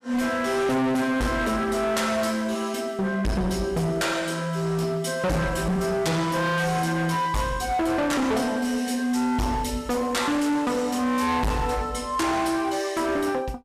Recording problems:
distorted audio; hard clipping, signal-to-distortion ratio 6 dB

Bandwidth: 14 kHz